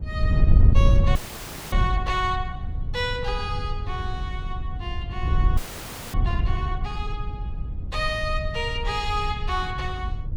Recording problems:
wind noise; below 88 Hz, SNR -3 dB
frozen audio; at 1 s for 0.5 s and at 5.5 s for 0.5 s

